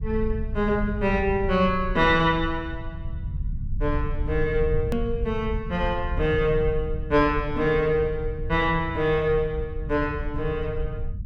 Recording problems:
rumble; below 86 Hz, SNR 8 dB
hard cut with a click; at 5 s

